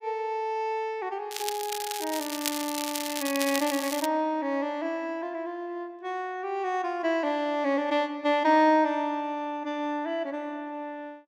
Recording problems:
crackling; from 1.5 to 4 s; loose cable, SNR 5 dB

